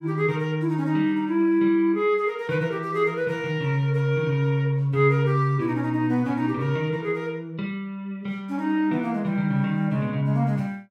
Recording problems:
none

